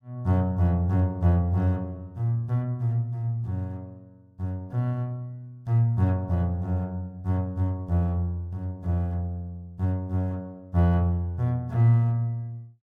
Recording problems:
none

